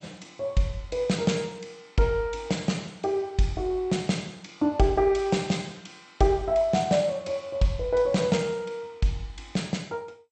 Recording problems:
codec artefacts; MP2, log-spectral distance 3 dB, nothing above 8.5 kHz

